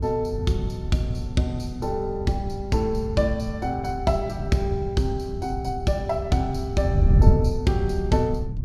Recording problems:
wind on the microphone; below 120 Hz, SNR 2 dB

